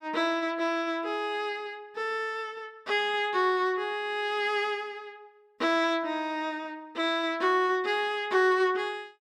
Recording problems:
none

